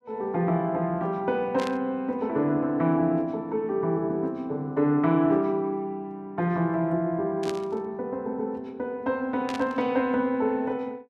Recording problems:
static burst; at 1.5 s, at 7.5 s and at 9.5 s; peak -6 dB vs average level

